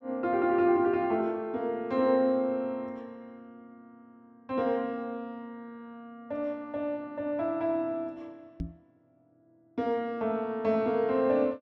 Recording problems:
microphone bump; at 8.5 s; peak -2 dB vs average level

